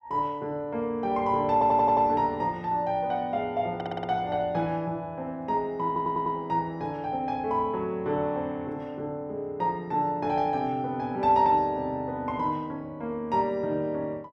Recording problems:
audio stuttering; at 1.5 s, at 4 s and at 6 s

